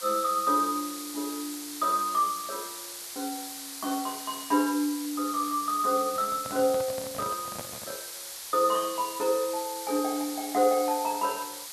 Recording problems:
hiss; SNR 9 dB
microphone handling noise; from 6 to 8 s; peak -7 dB vs average level

